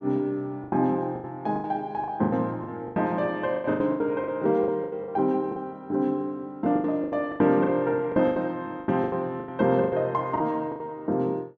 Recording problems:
lost packets; 16% of the sound replaced, filled with the last packet

